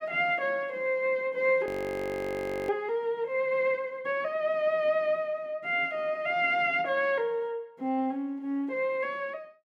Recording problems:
audio freezing; at 1.5 s for 1 s

